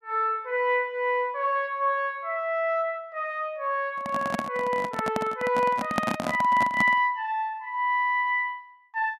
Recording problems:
handling noise; from 4 to 7 s; peak +4 dB vs average level

